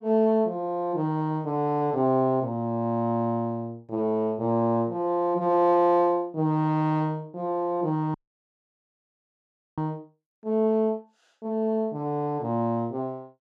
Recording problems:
audio cutting out; at 8 s for 1.5 s

